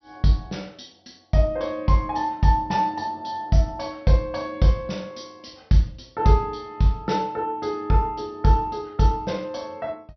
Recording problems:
low-pass filter; nothing above 5.9 kHz

